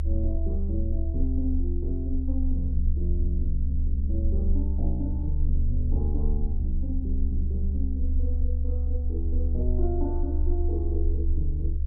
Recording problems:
hum; 60 Hz, harmonics up to 540 Hz, SNR 18 dB
rumble; below 72 Hz, strongest tone 24 Hz, SNR -7 dB

